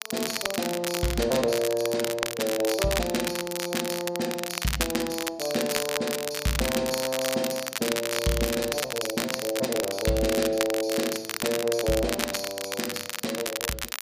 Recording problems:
crackle; vinyl, SNR 3 dB

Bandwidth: 15 kHz